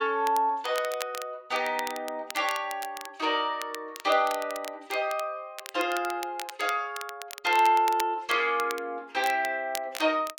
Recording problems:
crackle; vinyl, SNR 13 dB

